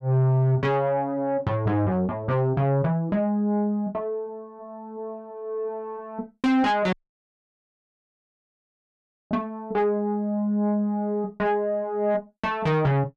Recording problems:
distorted audio; soft clipping, signal-to-distortion ratio 11 dB
dropout; at 7 s for 2.5 s

